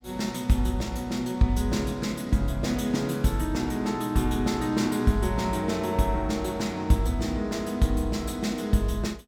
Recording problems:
none

